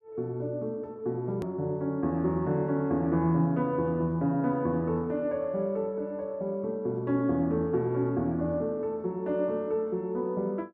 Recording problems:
click at an edit; at 1.5 s

